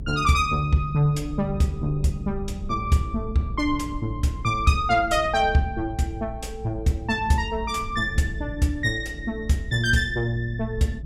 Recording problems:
rumble; below 100 Hz, SNR 12 dB

